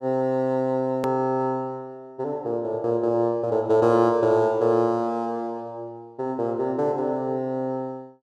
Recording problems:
hard cut with a click; at 1 s

